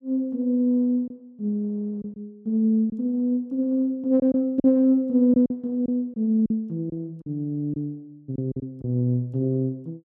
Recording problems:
lost packets; 5% of the sound replaced, filled with silence

